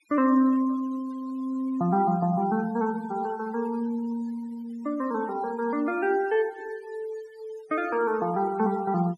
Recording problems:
denoising artefacts; signal-to-artefact ratio 22 dB

